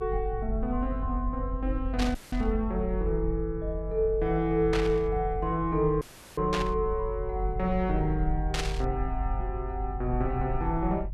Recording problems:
rumble; below 52 Hz, strongest tone 46 Hz, SNR 5 dB
static burst; 4 times, first at 2 s; peak +2 dB vs average level
dropout; at 2 s and at 6 s; filled with static

